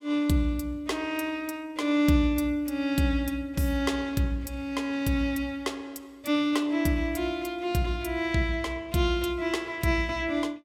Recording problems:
none

